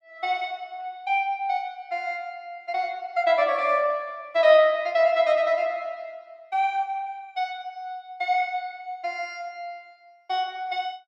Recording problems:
none

